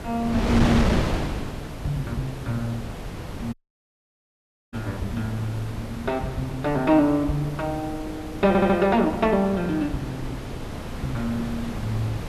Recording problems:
background hiss; slope +2 dB per octave, SNR 27 dB
wind on the microphone; below 600 Hz, SNR 6 dB
audio cutting out; at 3.5 s for 1 s
audio stuttering; at 8.5 s

